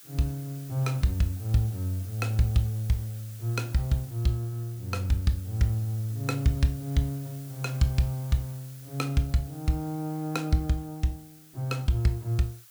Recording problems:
hiss; SNR 19 dB

